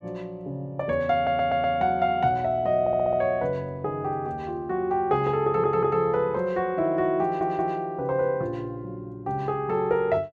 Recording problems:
audio stuttering; 4 times, first at 1 s

